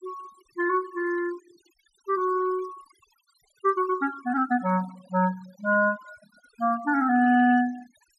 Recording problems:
denoising artefacts; signal-to-artefact ratio 22 dB

